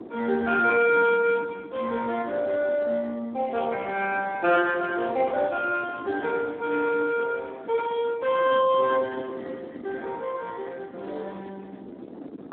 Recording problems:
phone line; 260 Hz to 3.3 kHz, Speex
wind noise; below 430 Hz, SNR 18 dB

